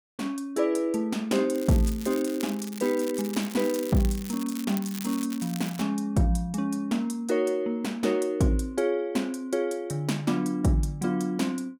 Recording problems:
crackling; from 1.5 to 6 s; loose cable, SNR 13 dB

